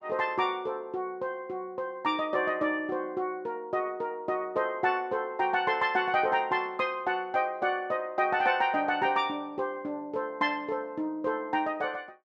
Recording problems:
none

